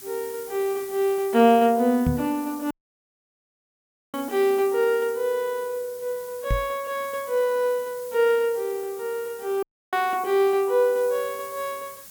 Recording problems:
hiss; SNR 18 dB
microphone bump; at 2 s and at 6.5 s; peak +3 dB vs average level
audio cutting out; at 2.5 s for 1.5 s and at 9.5 s

